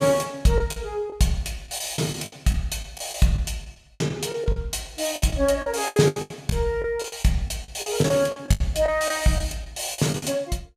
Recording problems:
lost packets; 14% of the sound replaced, filled with the last packet

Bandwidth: 14.5 kHz